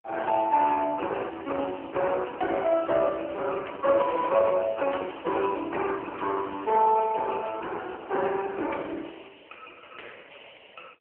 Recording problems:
phone line; 280 Hz to 3.1 kHz, AMR-NB

